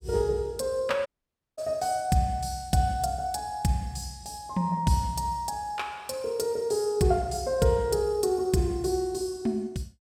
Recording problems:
audio cutting out; at 1 s for 0.5 s

